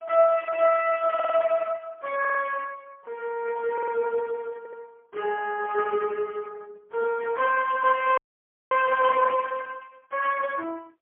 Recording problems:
telephone audio; 320 Hz to 2.8 kHz, AMR-NB, then MP3
audio stuttering; 4 times, first at 1 s
audio cutting out; at 8 s for 0.5 s

